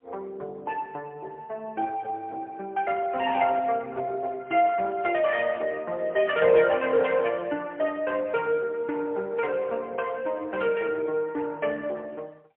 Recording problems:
telephone audio; 340 Hz to 3.1 kHz, AMR-NB, then MP3

